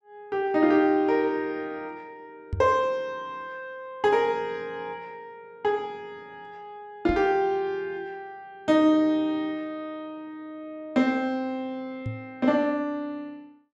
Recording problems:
knock on the microphone; at 2.5 s, at 7 s and at 12 s; peak -1 dB vs average level

